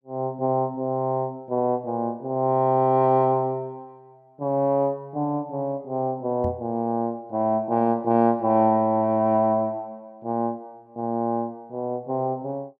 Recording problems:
microphone thump; at 6.5 s; peak -3 dB vs average level

